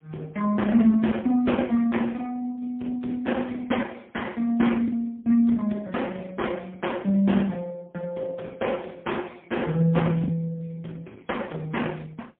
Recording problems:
phone line; 170 Hz to 3.7 kHz, AMR-NB, then MP3
lost packets; 1% of the sound replaced, filled with the last packet

